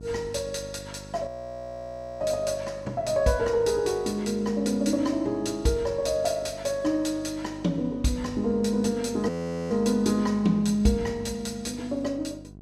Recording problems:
electrical hum; 50 Hz, harmonics up to 750 Hz, SNR 18 dB
audio freezing; at 1.5 s for 1 s and at 9.5 s

